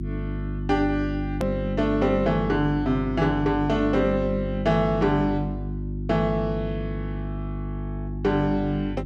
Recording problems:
electrical hum; 50 Hz, harmonics up to 350 Hz, SNR 6 dB
hard cut with a click; at 1.5 s

